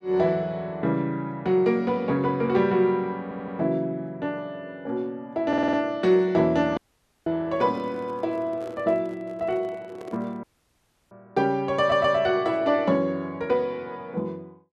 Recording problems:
audio stuttering; at 3 s, at 5.5 s and at 12 s
audio cutting out; at 7 s and at 10 s for 0.5 s
handling noise; from 7.5 to 10 s; peak -11 dB vs average level

